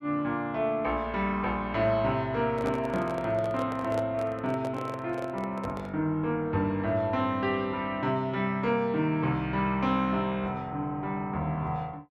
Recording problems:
microphone handling noise; from 2.5 to 6 s; peak -3 dB vs average level

